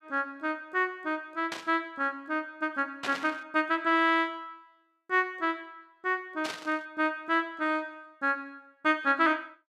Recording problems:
static burst; at 1.5 s, at 3 s and at 6.5 s; peak -1 dB vs average level

